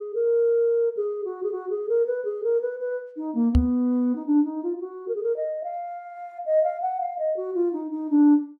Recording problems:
microphone bump; at 3.5 s; peak +7 dB vs average level

